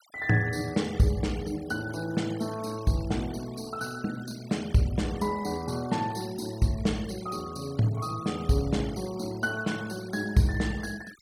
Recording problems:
noise reduction artefacts; signal-to-artefact ratio 18 dB

